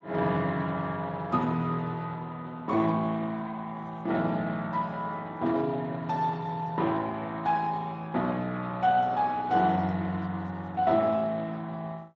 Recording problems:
lossy codec; Speex, log-spectral distance 3 dB

